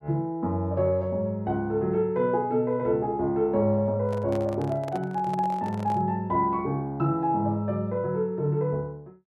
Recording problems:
handling noise; from 4 to 6 s; peak -8 dB vs average level

